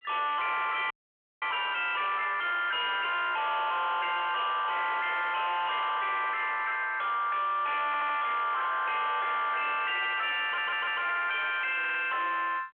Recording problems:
phone line; 130 Hz to 3.3 kHz, G.726
distortion; hard clipping, signal-to-distortion ratio 5 dB
audio freezing; at 1 s for 0.5 s
stutter; at 8 s, at 10 s and at 12 s

